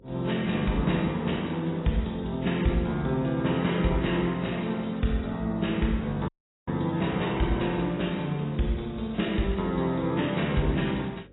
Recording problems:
lossy compression; AAC, log-spectral distance 6 dB, nothing above 3.8 kHz
hum; 50 Hz, harmonics up to 550 Hz, SNR 26 dB
dropout; at 6.5 s

